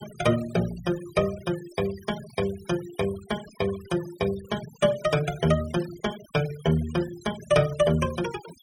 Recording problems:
noise reduction artefacts; signal-to-artefact ratio 17 dB

